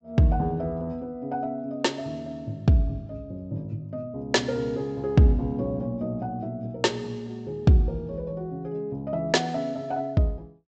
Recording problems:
treble missing; nothing above 8 kHz

